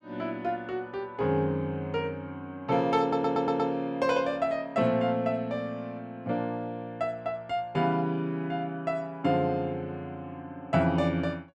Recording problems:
stutter; at 3 s

